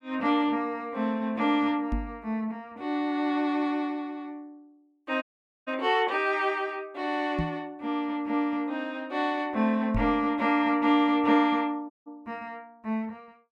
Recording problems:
knock on the microphone; at 2 s, at 7.5 s and at 10 s; peak 0 dB vs average level
dropout; at 5 s and at 12 s

